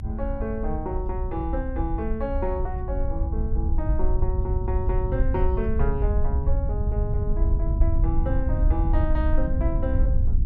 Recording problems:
rumble; below 70 Hz, SNR -5 dB

